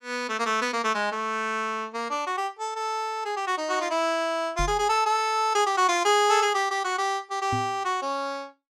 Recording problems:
microphone bump; at 4.5 s and at 7.5 s; peak -3 dB vs average level

